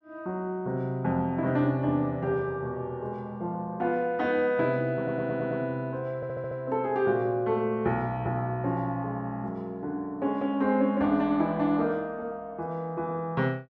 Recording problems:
audio stuttering; at 5 s and at 6 s

